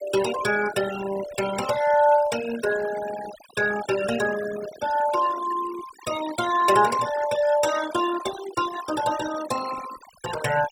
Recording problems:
denoising artefacts; signal-to-artefact ratio 11 dB

